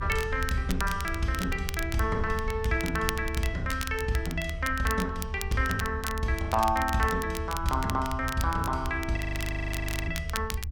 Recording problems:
rumble; below 78 Hz, SNR 7 dB
crackle; vinyl, SNR 10 dB
audio freezing; at 9 s for 1 s

